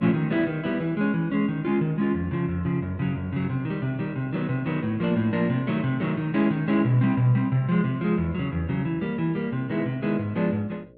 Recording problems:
hum; 60 Hz, harmonics up to 600 Hz, SNR 25 dB

